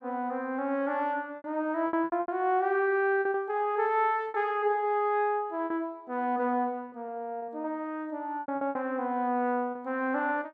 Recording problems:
packet loss; 8% of the sound replaced, filled with repeated pitch periods

